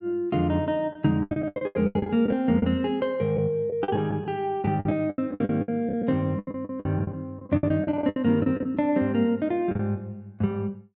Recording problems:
lost packets; 15% of the sound replaced, filled with the last packet

